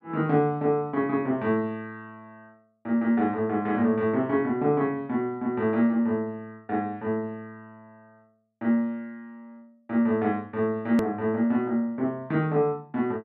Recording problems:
click at an edit; at 11 s

